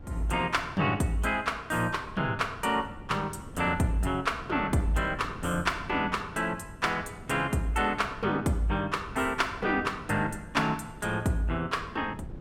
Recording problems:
wind on the microphone; below 260 Hz, SNR 16 dB

